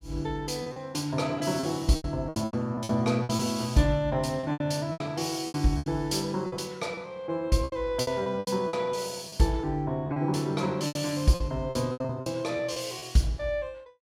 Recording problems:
packet loss; 13% of the sound replaced, filled with repeated pitch periods

